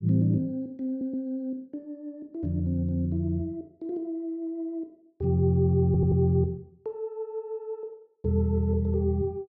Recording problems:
audio stuttering; at 1 s and at 6 s

